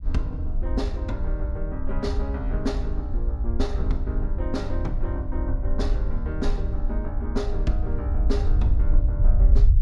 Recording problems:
rumble; below 58 Hz, SNR -6 dB

